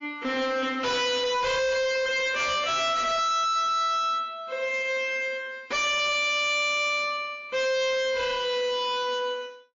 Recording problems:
codec artefacts; MP3, log-spectral distance 3 dB, nothing above 6 kHz
distorted audio; hard clipping, signal-to-distortion ratio 6 dB

